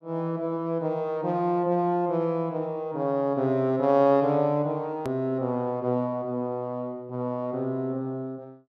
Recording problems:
click at an edit; at 5 s

